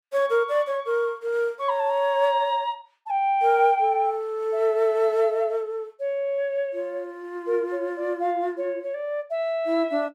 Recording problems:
none

